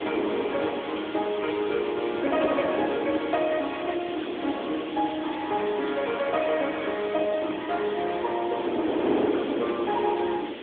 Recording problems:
phone line; 240 Hz to 3.4 kHz, AMR-NB
background hiss; SNR 13 dB
wind on the microphone; below 580 Hz, SNR 6 dB

